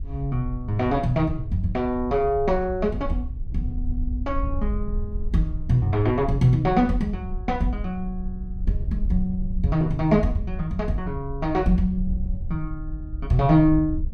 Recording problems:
wind on the microphone; below 68 Hz, SNR 8 dB

